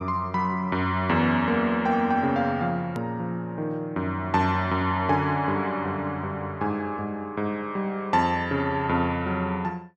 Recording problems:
hard cut with a click; at 3 s

